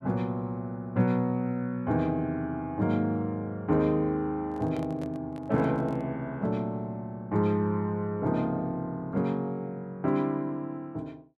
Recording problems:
microphone handling noise; from 4.5 to 6 s; peak -10 dB vs average level

